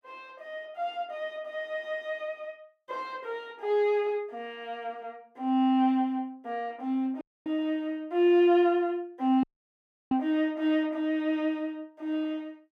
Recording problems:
dropout; at 7 s and at 9.5 s for 0.5 s

